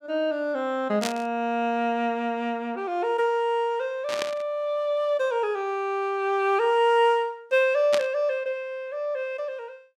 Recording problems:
burst of static; at 1 s, at 4 s and at 8 s; peak +1 dB vs average level

